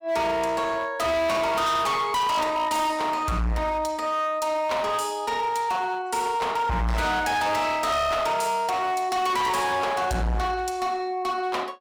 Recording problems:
distorted audio; hard clipping, signal-to-distortion ratio 7 dB

